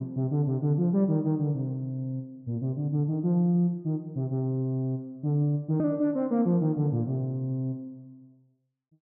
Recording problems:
none

